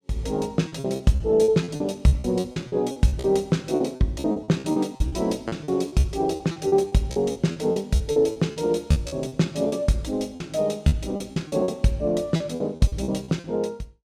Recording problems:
lost packets; 17% of the sound replaced, filled with repeated pitch periods

